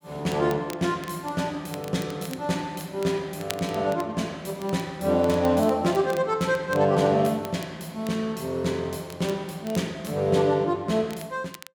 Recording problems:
crackle; vinyl, SNR 19 dB

